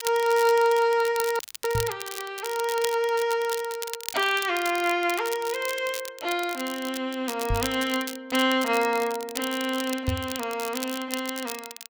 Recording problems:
crackle; vinyl, SNR 10 dB
audio freezing; at 1.5 s
microphone bump; at 2 s, at 7.5 s and at 10 s; peak +3 dB vs average level

